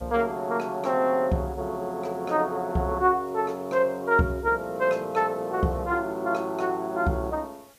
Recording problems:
hiss; SNR 28 dB

